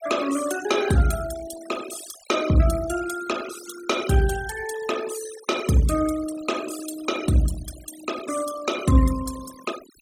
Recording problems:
noise reduction artefacts; signal-to-artefact ratio 12 dB

